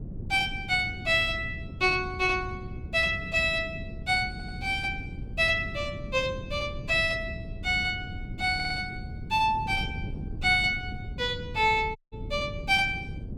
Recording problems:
wind noise; below 180 Hz, SNR 12 dB
audio stuttering; at 4.5 s and at 8.5 s
dropout; at 12 s

